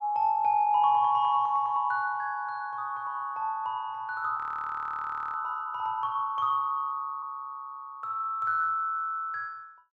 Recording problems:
audio freezing; at 4.5 s for 1 s

